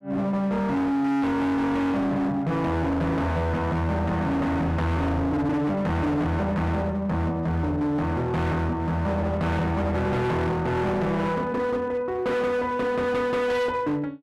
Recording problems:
distortion; hard clipping, uneven, signal-to-distortion ratio 7 dB

